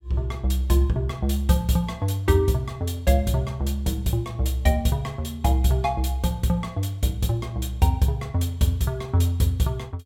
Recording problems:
none

